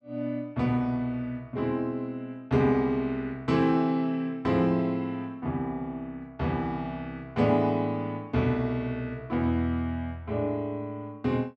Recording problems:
none

